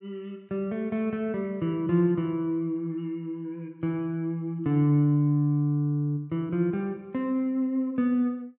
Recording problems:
treble missing; nothing above 5.6 kHz

